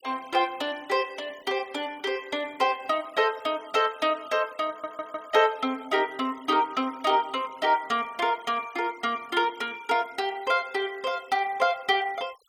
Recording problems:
noise reduction artefacts; signal-to-artefact ratio 24 dB
stutter; at 4.5 s

